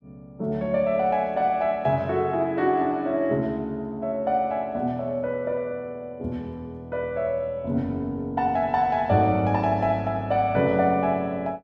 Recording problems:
none

